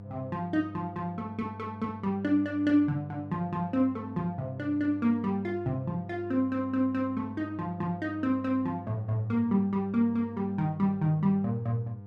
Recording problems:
hum; 50 Hz, harmonics up to 700 Hz, SNR 14 dB

